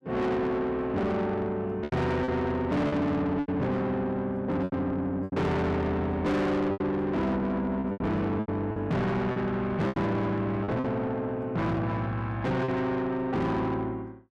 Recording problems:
distorted audio; soft clipping, signal-to-distortion ratio 7 dB
lost packets; 7% of the sound replaced, filled with repeated pitch periods

